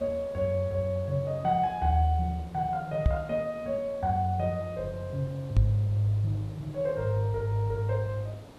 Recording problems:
background hiss; SNR 20 dB
knock on the microphone; at 3 s and at 5.5 s; peak +8 dB vs average level

